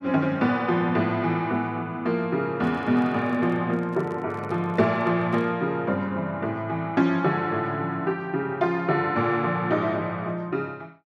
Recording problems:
handling noise; from 2.5 to 5.5 s; peak -12 dB vs average level

